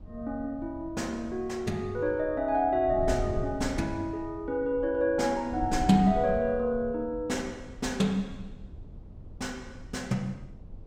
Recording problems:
wind noise; below 130 Hz, SNR 13 dB

